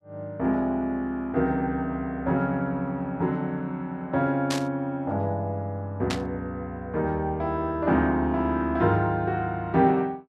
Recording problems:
static burst; at 4.5 s and at 6 s; peak 0 dB vs average level

